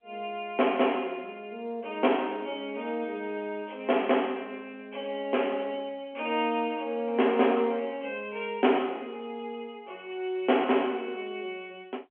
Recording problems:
telephone audio; 240 Hz to 3.3 kHz, G.711

